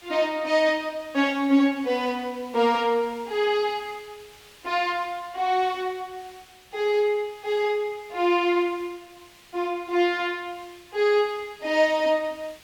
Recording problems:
background hiss; SNR 25 dB

